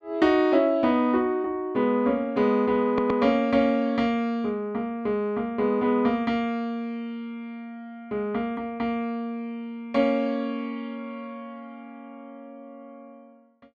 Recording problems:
audio stuttering; at 3 s

